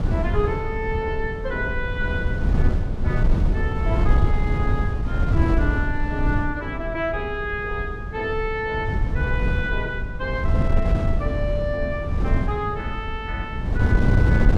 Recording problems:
wind noise; below 110 Hz, SNR -3 dB

